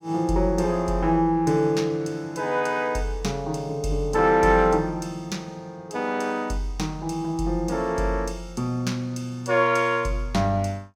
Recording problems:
none

